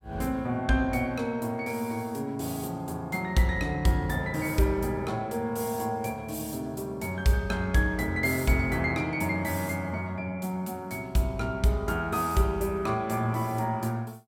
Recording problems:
none

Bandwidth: 17 kHz